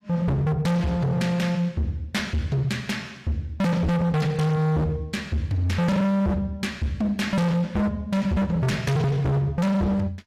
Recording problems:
lossy codec; AAC, log-spectral distance 2 dB, nothing above 17.1 kHz
distortion; hard clipping, signal-to-distortion ratio 6 dB

